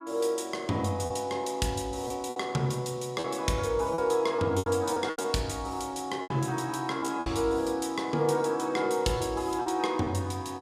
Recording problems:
packet loss; 6% of the sound replaced, filled with repeated pitch periods

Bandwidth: 15 kHz